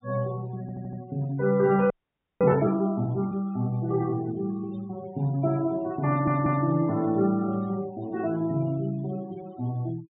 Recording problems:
low-pass filter; nothing above 4 kHz
denoising artefacts; signal-to-artefact ratio 21 dB
audio stuttering; at 0.5 s and at 6 s
frozen audio; at 2 s for 0.5 s

